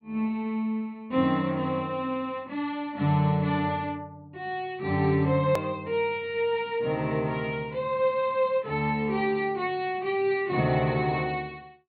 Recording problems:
low-pass filter; nothing above 4.5 kHz
edit click; at 5.5 s

